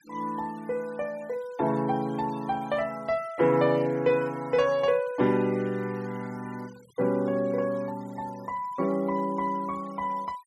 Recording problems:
noise reduction artefacts; signal-to-artefact ratio 24 dB

